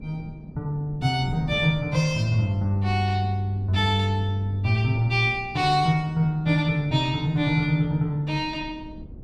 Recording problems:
wind on the microphone; below 230 Hz, SNR 17 dB

